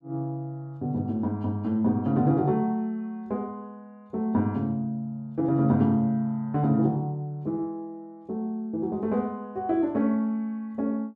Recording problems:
none

